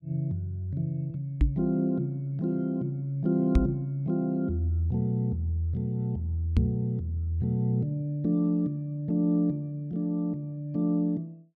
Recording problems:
microphone thump; at 1.5 s, at 3.5 s and at 6.5 s; peak +8 dB vs average level

